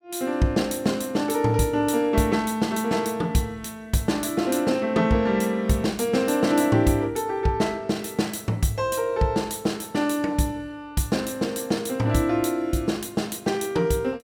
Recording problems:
none

